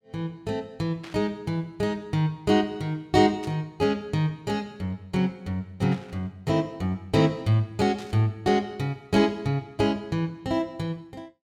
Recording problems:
static burst; 4 times, first at 1 s; peak -12 dB vs average level

